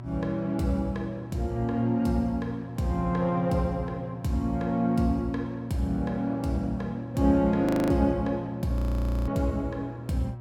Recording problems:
hum; 60 Hz, harmonics up to 960 Hz, SNR 12 dB
frozen audio; at 7.5 s and at 9 s for 0.5 s

